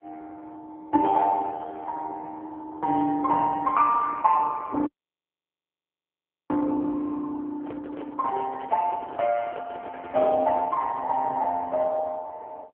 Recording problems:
phone line; 260 Hz to 3.6 kHz, AMR-NB
dropout; at 5 s for 1.5 s
handling noise; from 7.5 to 11 s; peak -8 dB vs average level

